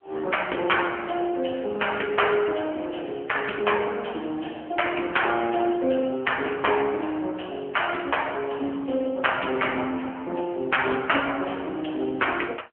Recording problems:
telephone audio; 280 Hz to 3.1 kHz, AMR-NB

